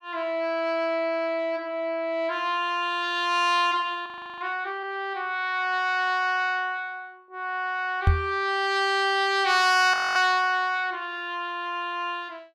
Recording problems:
frozen audio; at 4 s and at 10 s
microphone thump; at 8 s; peak +7 dB vs average level

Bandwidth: 14.5 kHz